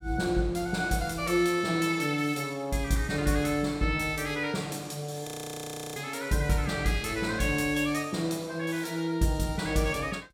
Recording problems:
audio freezing; at 5.5 s for 0.5 s

